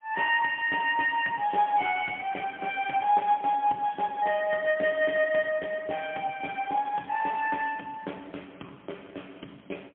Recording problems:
phone line; 240 Hz to 3.2 kHz, AMR-NB, then MP3

